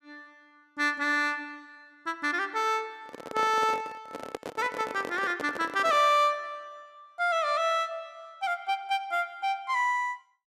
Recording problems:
handling noise; from 3 to 6 s; peak -3 dB vs average level

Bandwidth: 14 kHz